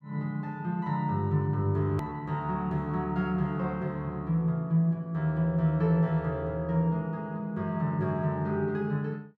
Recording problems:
hard cut with a click; at 2 s

